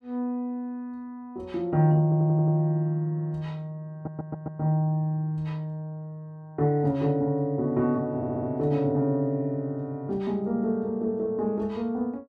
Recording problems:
audio stuttering; at 2 s, at 4 s and at 8 s

